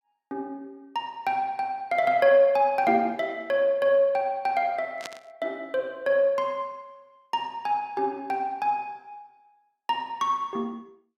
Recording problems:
static burst; at 5 s; peak -6 dB vs average level

